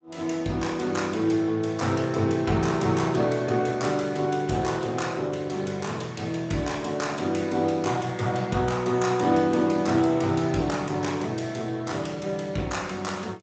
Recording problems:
lossy compression; Speex, log-spectral distance 5 dB, nothing above 7.6 kHz

